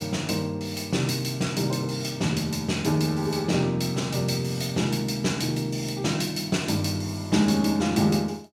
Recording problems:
none

